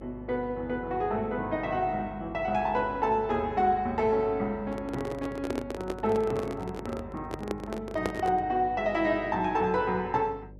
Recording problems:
mains hum; 50 Hz, harmonics up to 600 Hz, SNR 18 dB
handling noise; from 4.5 to 8.5 s; peak +3 dB vs average level

